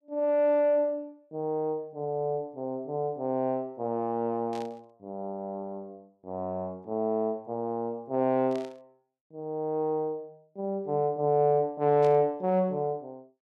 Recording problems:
static burst; at 4.5 s, at 8.5 s and at 12 s; peak -14 dB vs average level

